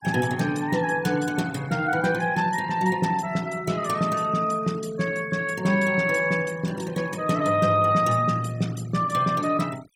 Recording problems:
noise reduction artefacts; signal-to-artefact ratio 20 dB

